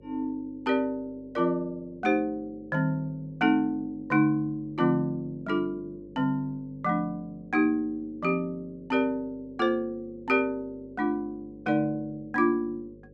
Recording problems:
electrical hum; 50 Hz, harmonics up to 550 Hz, SNR 24 dB

